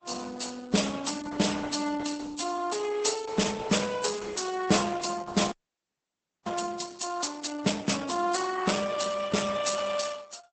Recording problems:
lossy compression; Vorbis, then Opus, log-spectral distance 7 dB, nothing above 8.2 kHz
frozen audio; at 5.5 s for 1 s

